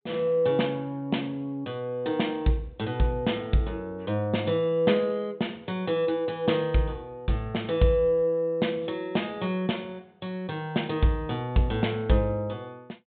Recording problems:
treble cut off; nothing above 4 kHz

